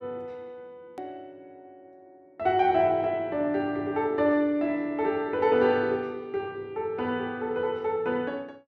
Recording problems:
click at an edit; at 1 s

